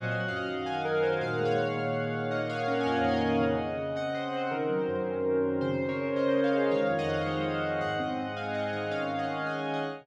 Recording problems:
none

